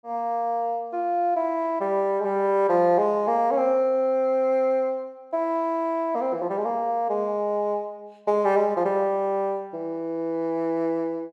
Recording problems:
none

